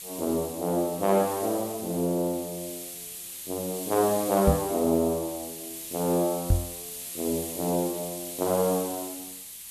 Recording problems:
background hiss; SNR 8 dB
knock on the microphone; at 4.5 s and at 6.5 s; peak +8 dB vs average level

